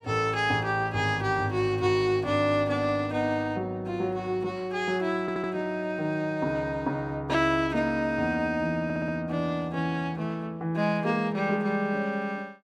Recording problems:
audio stuttering; at 5 s and at 9 s

